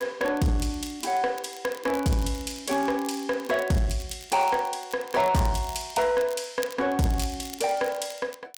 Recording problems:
distorted audio; soft clipping, signal-to-distortion ratio 11 dB
crackling; vinyl, SNR 18 dB

